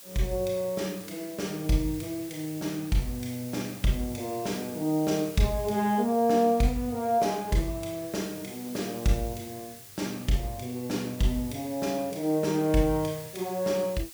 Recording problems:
background hiss; slope +2 dB per octave, SNR 15 dB

